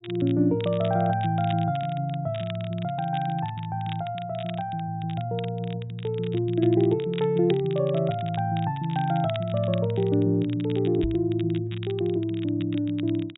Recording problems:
low-pass filter; nothing above 4 kHz
crackle; vinyl, SNR 19 dB
knock on the microphone; at 11 s; peak -1 dB vs average level

